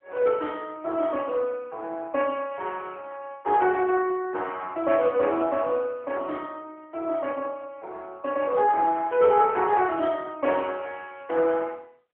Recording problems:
telephone audio; 300 Hz to 3.4 kHz, AMR-NB

